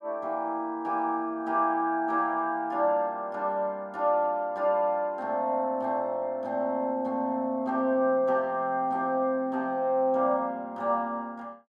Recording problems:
none

